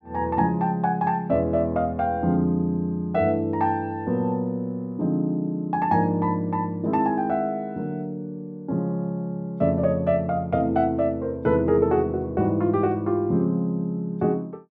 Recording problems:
none

